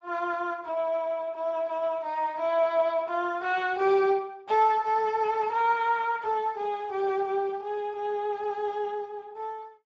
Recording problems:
codec artefacts; Speex, log-spectral distance 2 dB

